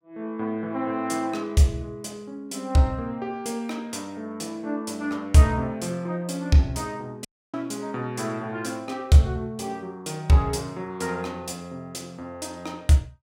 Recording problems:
dropout; at 7.5 s

